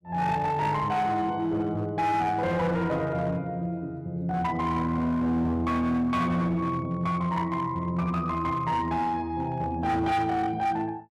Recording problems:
distorted audio; hard clipping, signal-to-distortion ratio 12 dB

